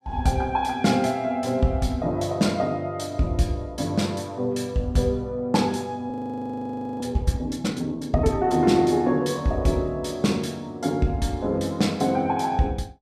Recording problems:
audio freezing; at 6 s for 1 s

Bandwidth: 14.5 kHz